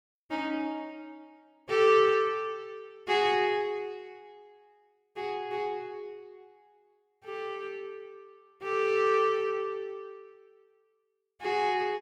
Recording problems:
none

